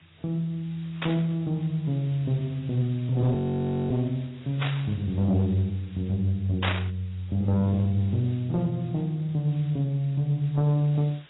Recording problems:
codec artefacts; AAC, log-spectral distance 5 dB
distorted audio; soft clipping, signal-to-distortion ratio 11 dB
hiss; SNR 27 dB
static burst; at 1 s, at 4.5 s and at 6.5 s; peak +2 dB vs average level
frozen audio; at 3.5 s for 0.5 s

